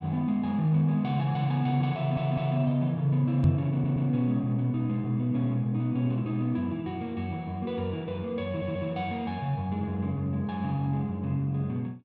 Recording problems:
stutter; at 2 s, at 3.5 s and at 8.5 s
microphone bump; at 3.5 s; peak +8 dB vs average level

